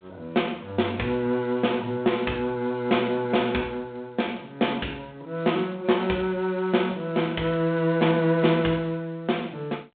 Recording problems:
phone line; 190 Hz to 3.6 kHz, G.726

